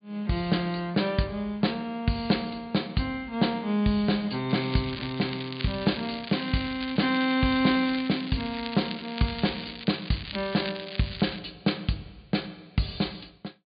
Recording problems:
low-pass filter; nothing above 4.8 kHz
crackling; from 4.5 to 11 s; loose cable, SNR 10 dB

